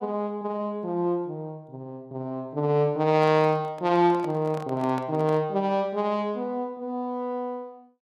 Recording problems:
microphone handling noise; from 3 to 5.5 s; peak -8 dB vs average level

